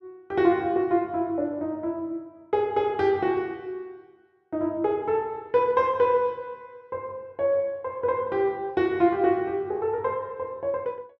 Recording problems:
none

